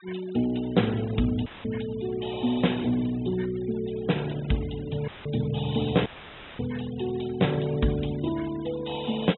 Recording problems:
treble missing; nothing above 3.8 kHz
noise reduction artefacts; signal-to-artefact ratio 19 dB
audio cutting out; at 1.5 s, at 5 s and at 6 s for 0.5 s; filled with static

